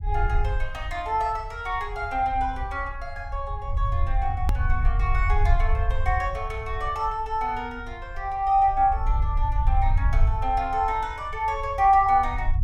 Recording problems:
rumble; below 72 Hz, SNR 3 dB
click at an edit; at 4.5 s

